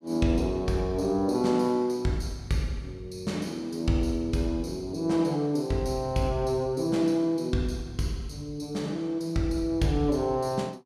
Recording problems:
none

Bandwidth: 15 kHz